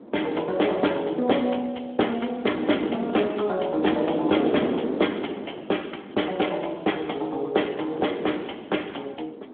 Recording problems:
telephone audio; 220 Hz to 3.4 kHz, Speex
wind noise; below 500 Hz, SNR 6 dB

